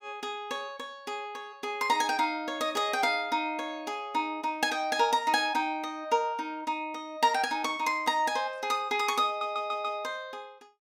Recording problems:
audio stuttering; at 9.5 s

